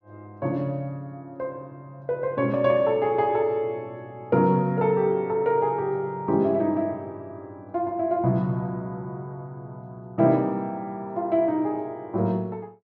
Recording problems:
treble cut off; nothing above 6.3 kHz

